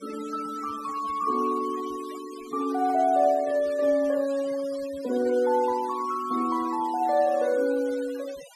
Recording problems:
noise reduction artefacts; signal-to-artefact ratio 19 dB

